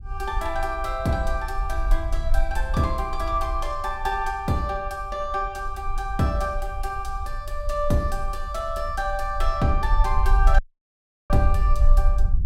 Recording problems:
low-frequency rumble; below 48 Hz, SNR 1 dB
audio cutting out; at 11 s for 0.5 s

